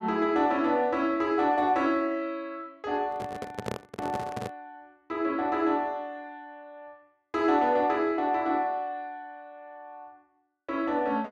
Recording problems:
handling noise; from 3 to 4.5 s; peak -2 dB vs average level

